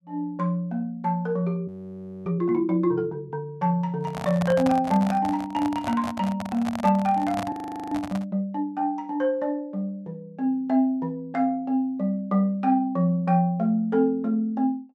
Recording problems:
frozen audio; at 1.5 s for 0.5 s and at 7.5 s
microphone handling noise; from 4 to 8.5 s; peak -2 dB vs average level

